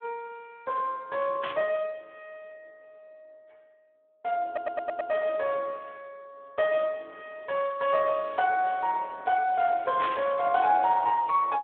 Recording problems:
telephone audio; 220 Hz to 2.8 kHz, Speex
burst of static; at 1.5 s and at 10 s; peak -3 dB vs average level
audio stuttering; at 4.5 s

